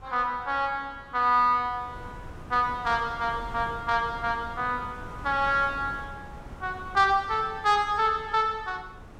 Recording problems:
wind noise; below 520 Hz, SNR 18 dB

